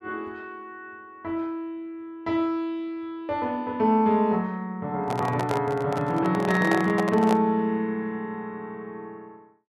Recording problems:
handling noise; from 5 to 7.5 s; peak +2 dB vs average level

